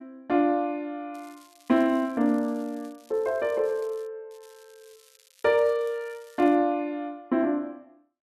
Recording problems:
crackle; from 1 to 4 s and from 4.5 to 6.5 s; loose cable, SNR 30 dB

